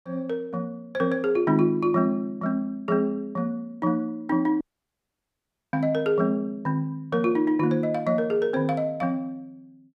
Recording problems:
audio cutting out; at 4.5 s for 1 s

